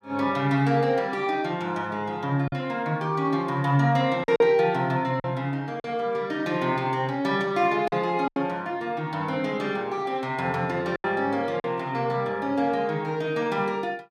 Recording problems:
lost packets; 3% of the sound replaced, filled with silence

